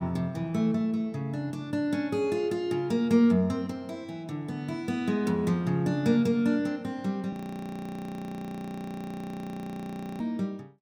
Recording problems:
frozen audio; at 7.5 s for 3 s

